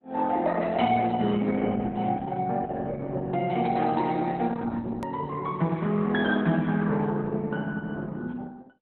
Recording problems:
lossy compression; Opus, log-spectral distance 3 dB, nothing above 13.1 kHz
hard cut with a click; at 5 s

